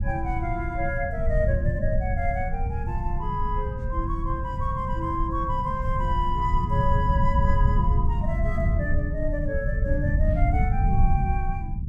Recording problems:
rumble; below 110 Hz, SNR -3 dB

